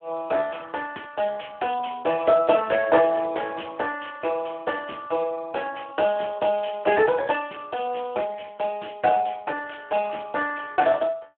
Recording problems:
telephone audio; 240 Hz to 3 kHz, Speex

